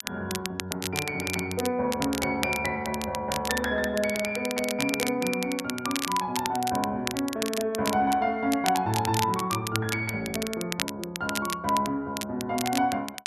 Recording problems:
crackling; vinyl, SNR 6 dB

